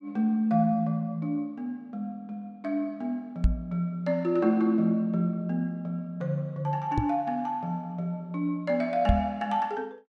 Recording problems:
microphone thump; at 3.5 s, at 7 s and at 9 s; peak +8 dB vs average level

